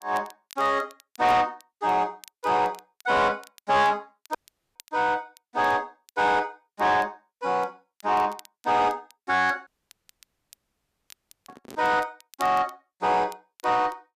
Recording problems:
distorted audio; soft clipping, signal-to-distortion ratio 11 dB
crackle; vinyl, SNR 27 dB
dropout; at 4.5 s and at 9.5 s for 2 s
microphone handling noise; at 11 s; peak -14 dB vs average level

